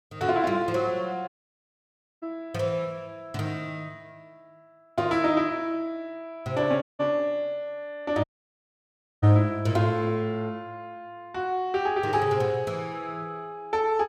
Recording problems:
audio cutting out; at 1.5 s for 1 s, at 7 s and at 8 s for 1 s

